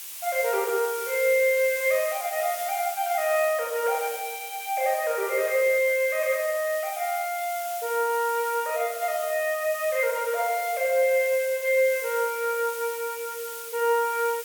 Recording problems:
background hiss; slope +4 dB per octave, SNR 10 dB

